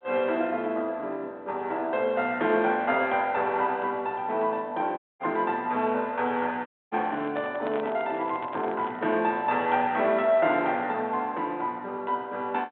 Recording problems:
telephone audio; 300 Hz to 3.6 kHz, G.726
dropout; at 5 s and at 6.5 s
microphone handling noise; from 7 to 9 s; peak -7 dB vs average level

